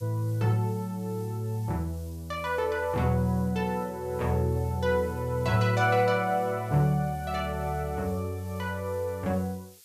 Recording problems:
hiss; slope +6 dB per octave, SNR 24 dB

